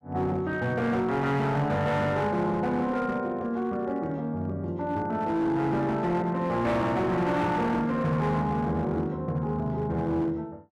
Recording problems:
distorted audio; hard clipping, signal-to-distortion ratio 11 dB

